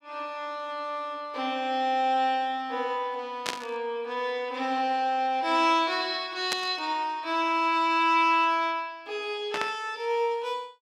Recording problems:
burst of static; at 3.5 s, at 6.5 s and at 9.5 s; peak +2 dB vs average level

